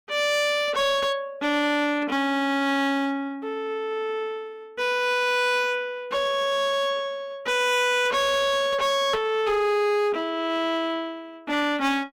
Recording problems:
distorted audio; hard clipping, uneven, signal-to-distortion ratio 10 dB

